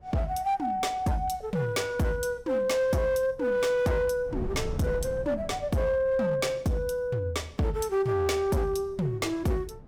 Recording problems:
distorted audio; hard clipping, signal-to-distortion ratio 10 dB
wind noise; below 180 Hz, SNR 15 dB

